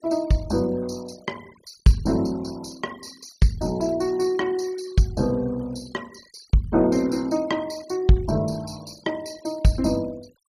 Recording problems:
noise reduction artefacts; signal-to-artefact ratio 22 dB

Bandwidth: 15 kHz